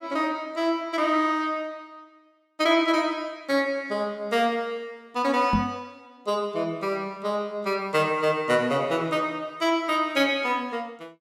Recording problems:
knock on the microphone; at 5.5 s; peak +4 dB vs average level

